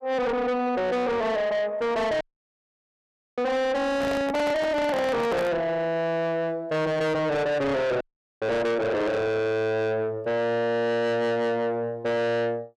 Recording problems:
distortion; soft clipping, signal-to-distortion ratio 6 dB
audio cutting out; at 2 s for 1 s and at 8 s
microphone handling noise; from 4 to 5.5 s; peak +1 dB vs average level

